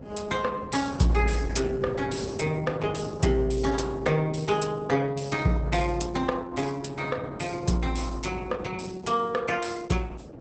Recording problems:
lossy compression; Opus, log-spectral distance 5 dB, nothing above 8.2 kHz
wind noise; below 460 Hz, SNR 13 dB

